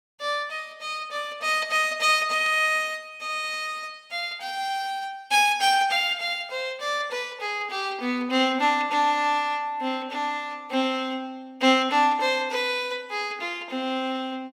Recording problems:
static burst; at 2.5 s; peak -12 dB vs average level

